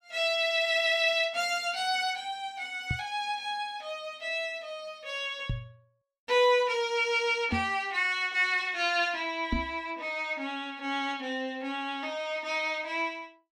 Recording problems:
microphone bump; 4 times, first at 3 s; peak +2 dB vs average level

